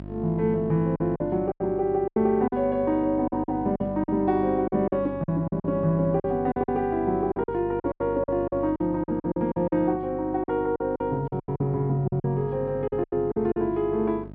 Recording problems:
treble cut off; nothing above 5.5 kHz
hum; 50 Hz, harmonics up to 950 Hz, SNR 15 dB
lost packets; 13% of the sound replaced, filled with silence

